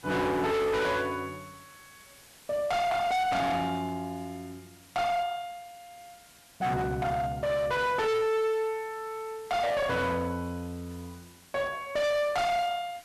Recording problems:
distortion; hard clipping, signal-to-distortion ratio 6 dB
hiss; slope -1 dB per octave, SNR 24 dB

